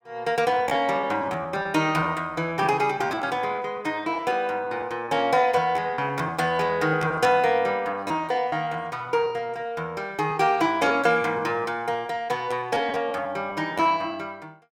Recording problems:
lost packets; 10% of the sound replaced, filled with repeated pitch periods

